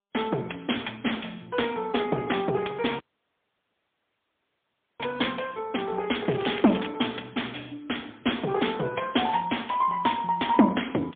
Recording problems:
telephone audio; 190 Hz to 3.4 kHz, AMR-NB, then MP3
dropout; at 3 s for 2 s
crackle; at 6.5 s; loose cable, SNR 13 dB

